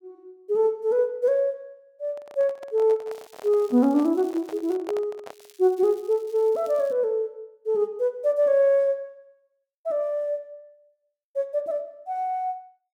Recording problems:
handling noise; from 2 to 5.5 s; peak -6 dB vs average level
crackling; from 3 to 4.5 s and from 5.5 to 7 s; loose cable, SNR 29 dB

